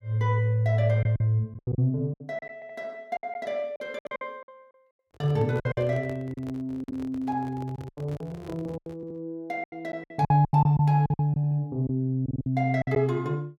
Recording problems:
packet loss; 13% of the sound replaced, filled with silence
stutter; 4 times, first at 2.5 s
microphone handling noise; from 5 to 9 s; peak -10 dB vs average level

